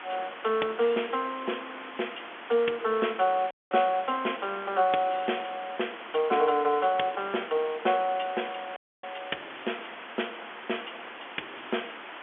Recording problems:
telephone audio; 260 Hz to 3.4 kHz, G.711
hiss; SNR 12 dB
dropout; at 3.5 s and at 9 s

